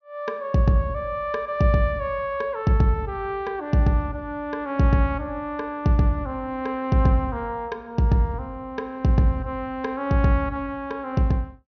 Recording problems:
treble cut off; nothing above 6.4 kHz

